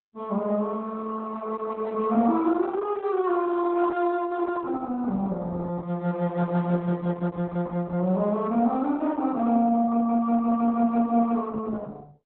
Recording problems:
codec artefacts; Opus, log-spectral distance 3 dB, nothing above 3.9 kHz

